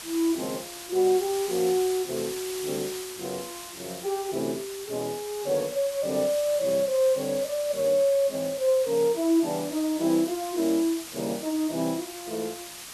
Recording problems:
hiss; slope +1 dB per octave, SNR 11 dB

